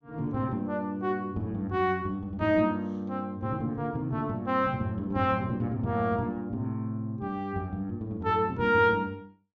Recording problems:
treble cut off; nothing above 8 kHz

